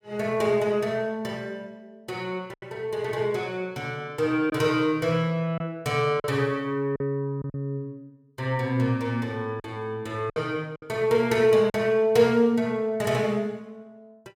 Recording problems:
packet loss; 3% of the sound replaced, filled with silence

